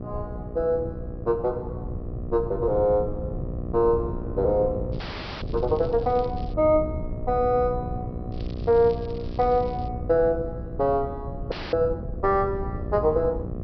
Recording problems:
treble missing; nothing above 5.5 kHz
hum; 60 Hz, harmonics up to 1.3 kHz, SNR 13 dB
wind noise; below 130 Hz, SNR 10 dB
crackle; from 5 to 6.5 s and from 8.5 to 10 s; loose cable, SNR 27 dB
frozen audio; at 5 s and at 12 s

